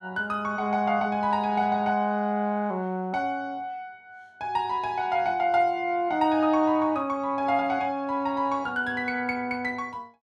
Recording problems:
none

